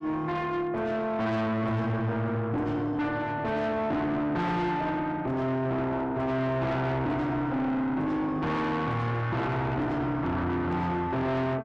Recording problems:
distortion; soft clipping, signal-to-distortion ratio 6 dB

